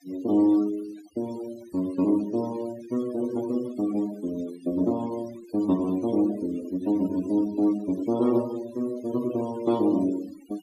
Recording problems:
denoising artefacts; signal-to-artefact ratio 18 dB

